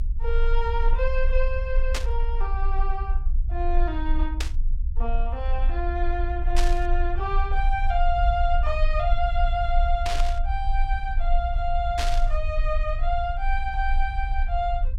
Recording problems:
rumble; below 46 Hz, strongest tone 24 Hz, SNR -1 dB
burst of static; 5 times, first at 2 s; peak +3 dB vs average level

